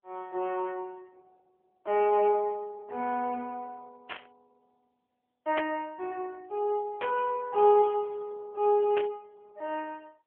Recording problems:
phone line; 280 Hz to 3.3 kHz, AMR-NB
burst of static; 4 times, first at 4 s; peak 0 dB vs average level

